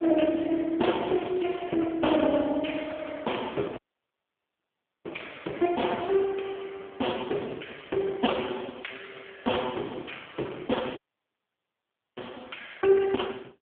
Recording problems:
telephone audio; 220 Hz to 3.4 kHz, AMR-NB
crackling; at 1 s; loose cable, SNR 23 dB
audio cutting out; at 4 s for 1.5 s and at 11 s for 1 s

